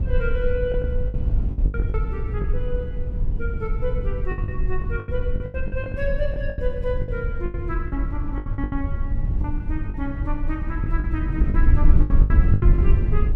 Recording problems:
rumble; below 76 Hz, SNR -7 dB
lost packets; 12% of the sound replaced, filled with the last packet

